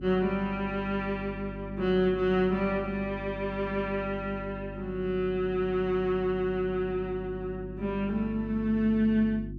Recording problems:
hum; 50 Hz, harmonics up to 350 Hz, SNR 12 dB

